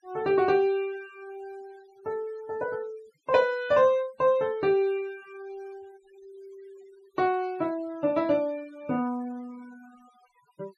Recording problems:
denoising artefacts; signal-to-artefact ratio 27 dB

